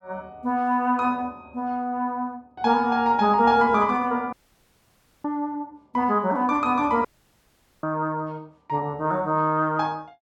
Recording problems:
audio cutting out; at 4.5 s for 1 s and at 7 s for 1 s

